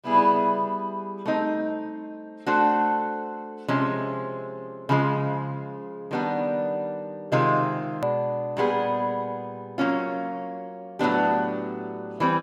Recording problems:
click at an edit; at 8 s

